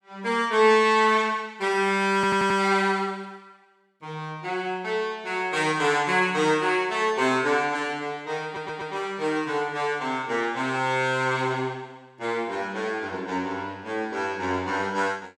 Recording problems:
stutter; at 2 s and at 8.5 s

